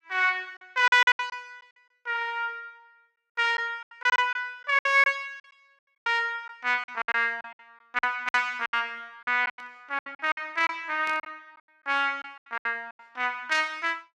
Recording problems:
lost packets; 13% of the sound replaced, filled with silence
burst of static; at 9.5 s and at 11 s; peak -13 dB vs average level

